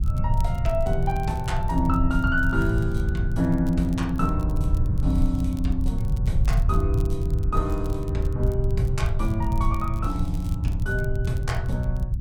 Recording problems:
hum; 50 Hz, harmonics up to 350 Hz, SNR 18 dB
rumble; below 98 Hz, SNR -1 dB
crackle; vinyl, SNR 24 dB

